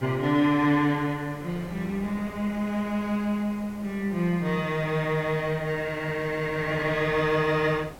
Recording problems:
background hiss; slope -2 dB per octave, SNR 27 dB
wind noise; below 760 Hz, SNR 19 dB

